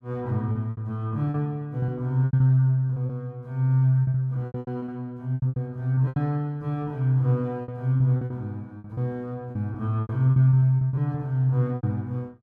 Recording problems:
packet loss; 14% of the sound replaced, filled with repeated pitch periods

